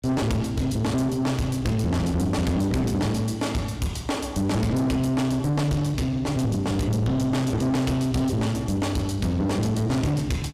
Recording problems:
distorted audio; soft clipping, signal-to-distortion ratio 7 dB

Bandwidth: 15.5 kHz